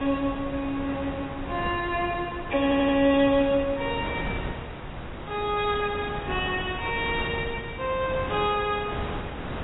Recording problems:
lossy compression; AAC, log-spectral distance 4 dB, nothing above 3.4 kHz
wind on the microphone; below 960 Hz, SNR 9 dB
audio stuttering; at 2.5 s

